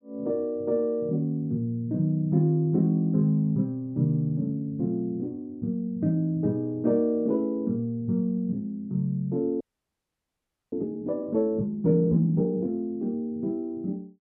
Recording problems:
audio freezing; at 9.5 s for 1 s

